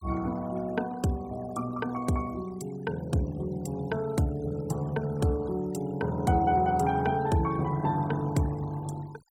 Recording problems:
denoising artefacts; signal-to-artefact ratio 22 dB

